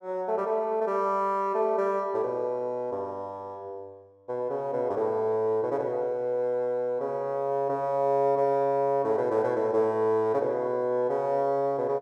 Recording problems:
none

